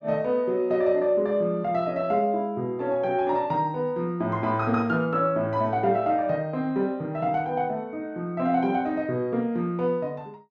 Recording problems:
none

